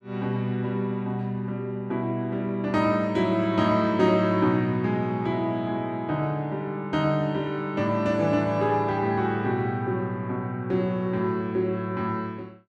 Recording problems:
none

